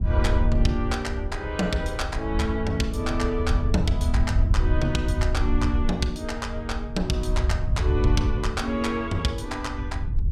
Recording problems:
wind on the microphone; below 84 Hz, SNR 0 dB

